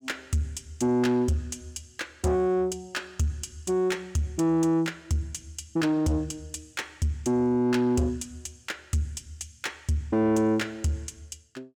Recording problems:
distortion; soft clipping, signal-to-distortion ratio 10 dB

